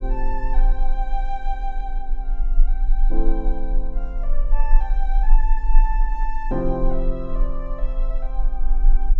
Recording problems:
low-frequency rumble; below 30 Hz, strongest tone 18 Hz, SNR -7 dB

